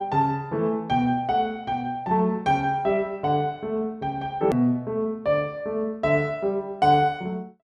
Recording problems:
edit click; at 4.5 s

